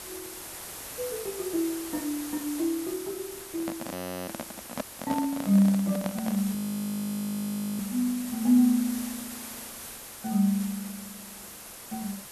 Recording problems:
hiss; slope -2 dB per octave, SNR 11 dB
handling noise; from 3.5 to 6.5 s; peak 0 dB vs average level
frozen audio; at 4 s and at 6.5 s for 1 s

